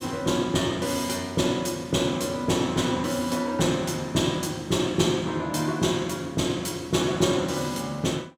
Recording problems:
none

